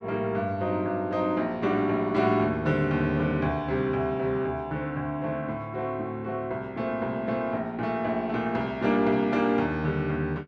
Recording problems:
none

